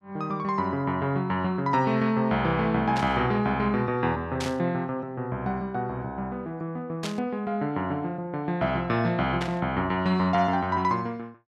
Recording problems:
burst of static; 4 times, first at 3 s; peak -3 dB vs average level

